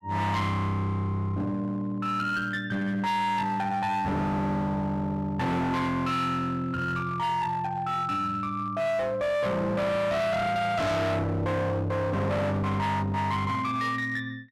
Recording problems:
distorted audio; hard clipping, signal-to-distortion ratio 6 dB

